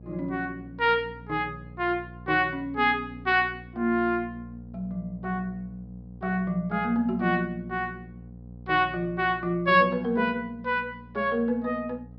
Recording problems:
low-pass filter; nothing above 5.5 kHz
hum; 60 Hz, harmonics up to 720 Hz, SNR 18 dB

